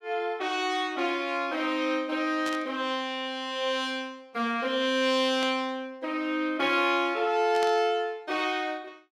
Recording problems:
burst of static; at 2.5 s, at 5.5 s and at 7.5 s; peak -5 dB vs average level

